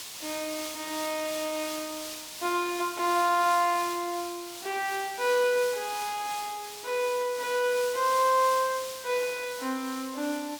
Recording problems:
hiss; slope +2 dB per octave, SNR 10 dB

